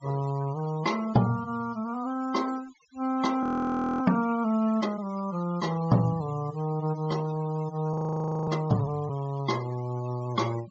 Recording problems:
low-pass filter; nothing above 8 kHz
denoising artefacts; signal-to-artefact ratio 20 dB
frozen audio; at 3.5 s for 0.5 s and at 8 s for 0.5 s

